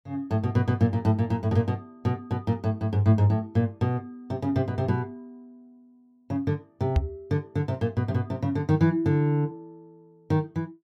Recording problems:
microphone bump; at 7 s; peak +7 dB vs average level

